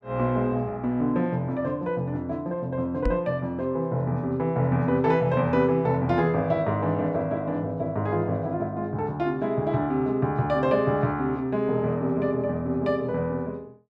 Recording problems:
microphone bump; at 3 s; peak +1 dB vs average level

